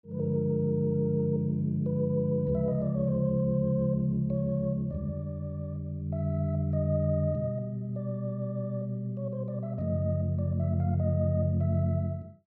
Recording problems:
none

